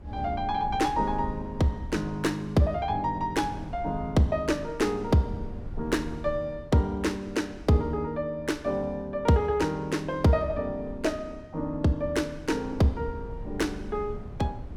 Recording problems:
low-frequency rumble; below 110 Hz, SNR 15 dB

